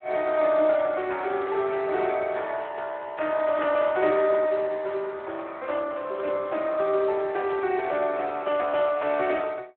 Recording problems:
telephone audio; 300 Hz to 3.2 kHz, Speex

